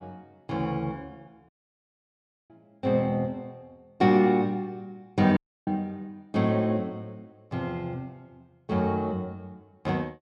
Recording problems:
dropout; at 1.5 s for 1 s and at 5.5 s

